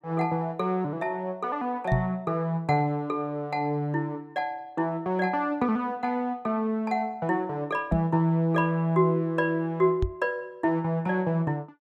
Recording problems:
microphone bump; at 2 s, at 8 s and at 10 s; peak +5 dB vs average level

